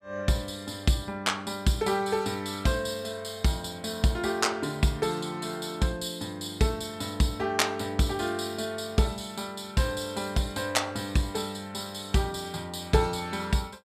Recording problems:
none

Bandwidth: 14.5 kHz